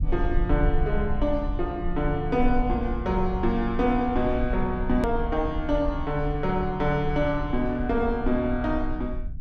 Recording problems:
rumble; below 56 Hz, SNR 6 dB
edit click; at 5 s

